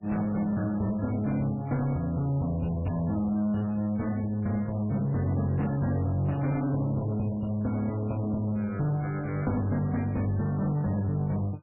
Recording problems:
lossy compression; MP3, log-spectral distance 2 dB, nothing above 2.4 kHz
distortion; soft clipping, signal-to-distortion ratio 11 dB

